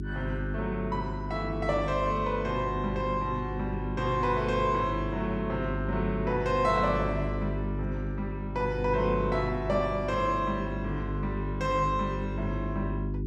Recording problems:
hum; 50 Hz, harmonics up to 400 Hz, SNR 4 dB

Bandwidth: 12.5 kHz